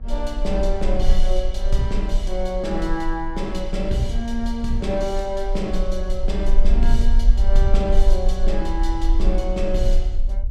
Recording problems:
hum; 60 Hz, harmonics up to 1.1 kHz, SNR 23 dB
low-frequency rumble; below 38 Hz, strongest tone 22 Hz, SNR -1 dB

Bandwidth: 14.5 kHz